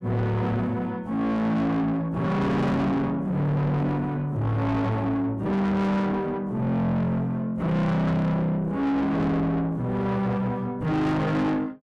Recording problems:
distortion; soft clipping, signal-to-distortion ratio 6 dB

